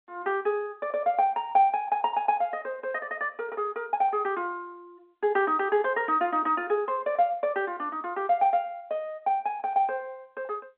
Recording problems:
telephone audio; 280 Hz to 3.5 kHz, G.711

